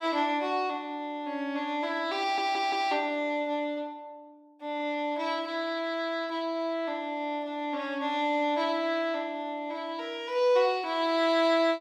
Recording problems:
audio stuttering; at 2 s

